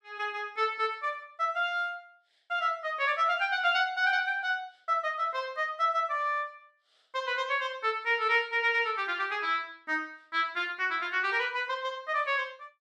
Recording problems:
none

